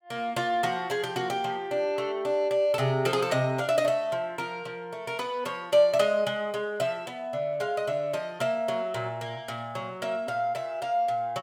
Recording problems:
none

